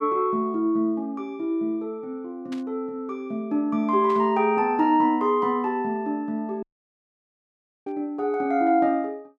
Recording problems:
burst of static; at 2.5 s, at 4 s and at 8 s; peak -14 dB vs average level
dropout; at 6.5 s for 1 s

